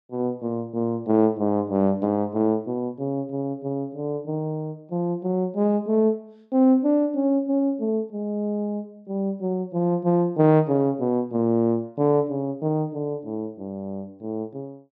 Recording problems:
none

